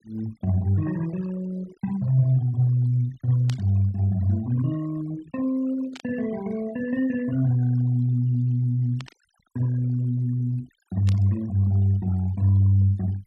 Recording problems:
noise reduction artefacts; signal-to-artefact ratio 22 dB
static burst; 4 times, first at 3.5 s; peak -9 dB vs average level

